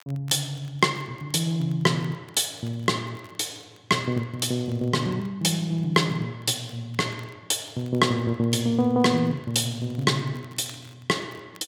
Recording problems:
crackle; vinyl, SNR 30 dB

